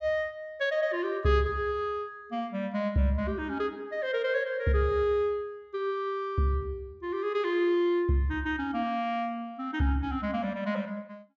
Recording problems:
treble missing; nothing above 8 kHz

